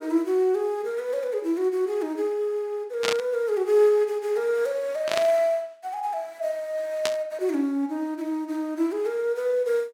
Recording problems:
burst of static; at 3 s, at 5 s and at 7 s; peak +4 dB vs average level

